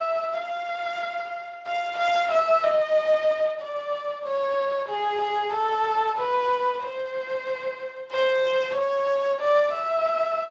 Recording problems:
lossy codec; Speex, then AAC, log-spectral distance 3 dB

